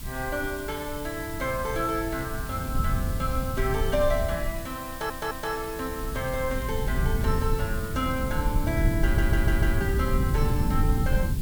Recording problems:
hiss; SNR 11 dB
low-frequency rumble; below 120 Hz, SNR -1 dB
crackle; from 1.5 to 4.5 s, from 6 to 8 s and at 10 s; loose cable, SNR 25 dB
audio stuttering; at 5 s and at 9 s

